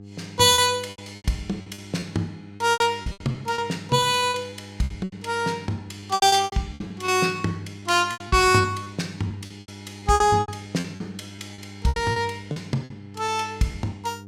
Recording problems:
mains hum; 50 Hz, harmonics up to 700 Hz, SNR 19 dB
packet loss; 16% of the sound replaced, filled with repeated pitch periods

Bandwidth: 16 kHz